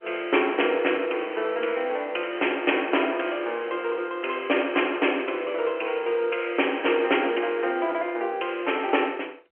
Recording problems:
phone line; 300 Hz to 3.2 kHz, G.711

